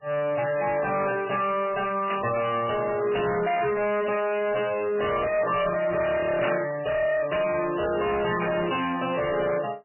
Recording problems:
codec artefacts; MP3, log-spectral distance 6 dB, nothing above 2.9 kHz
distortion; hard clipping, signal-to-distortion ratio 6 dB
static burst; at 2 s, at 6.5 s and at 8.5 s; peak -1 dB vs average level

